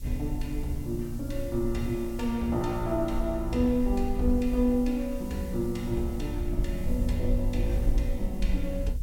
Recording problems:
background hiss; SNR 22 dB
rumble; below 52 Hz, SNR 5 dB

